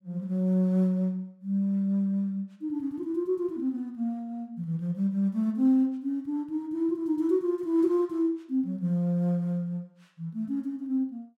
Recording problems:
none

